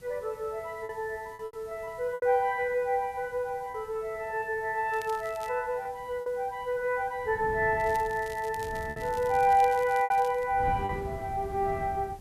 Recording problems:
background hiss; slope -1 dB per octave, SNR 29 dB
wind on the microphone; below 220 Hz, SNR 14 dB
packet loss; 5% of the sound replaced, filled with repeated pitch periods
crackling; at 5 s and from 8 to 10 s; loose cable, SNR 21 dB

